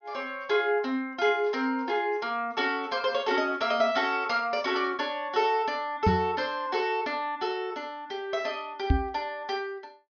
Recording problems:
treble cut off; nothing above 6.3 kHz
knock on the microphone; at 6 s and at 9 s; peak +8 dB vs average level

